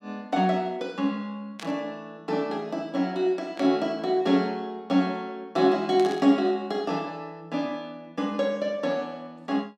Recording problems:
static burst; at 1.5 s, at 3.5 s and at 6 s; peak -8 dB vs average level

